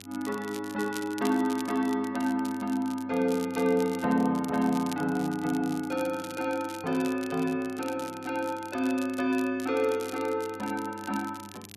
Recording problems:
electrical hum; 50 Hz, harmonics up to 1.1 kHz, SNR 23 dB
crackling; vinyl, SNR 17 dB

